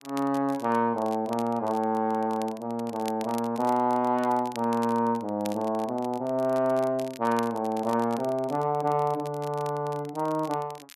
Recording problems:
crackling; vinyl, SNR 21 dB

